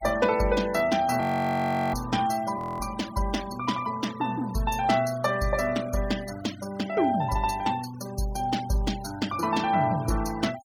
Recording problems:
noise reduction artefacts; signal-to-artefact ratio 16 dB
audio freezing; at 1 s for 0.5 s and at 2.5 s

